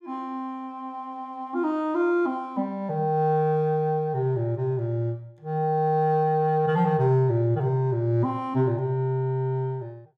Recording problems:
none

